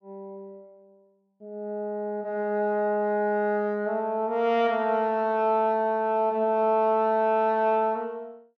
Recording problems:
none

